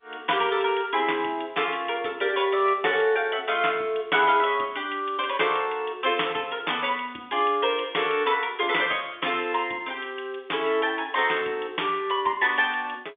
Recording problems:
telephone audio; 280 Hz to 3.6 kHz, G.711

